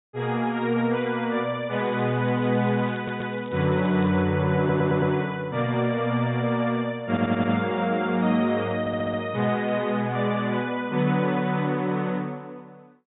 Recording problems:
treble missing; nothing above 4 kHz
crackle; from 2 to 4 s; loose cable, SNR 27 dB
stutter; 4 times, first at 3 s

